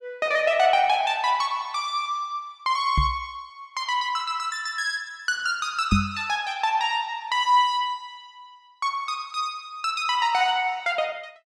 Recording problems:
microphone thump; at 3 s and at 6 s; peak +7 dB vs average level

